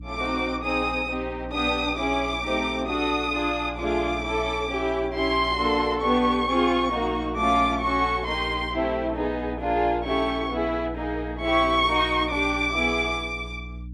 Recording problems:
mains hum; 60 Hz, harmonics up to 300 Hz, SNR 15 dB

